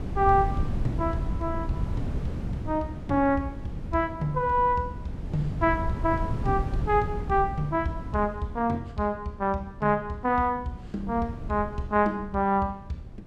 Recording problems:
wind on the microphone; below 150 Hz, SNR 7 dB

